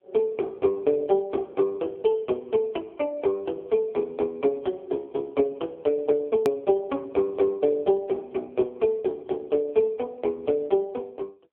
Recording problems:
phone line; 260 Hz to 2.3 kHz, AMR-NB
click at an edit; at 6.5 s

